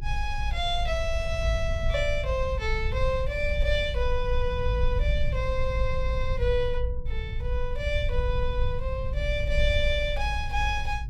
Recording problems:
rumble; below 64 Hz, strongest tone 20 Hz, SNR 1 dB

